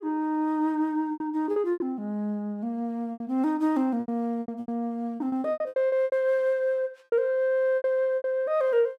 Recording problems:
packet loss; 13% of the sound replaced, filled with repeated pitch periods

